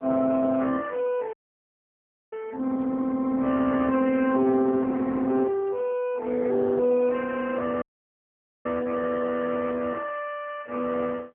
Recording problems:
phone line; 240 Hz to 2.9 kHz, AMR-NB
audio cutting out; at 1.5 s for 1 s and at 8 s for 1 s

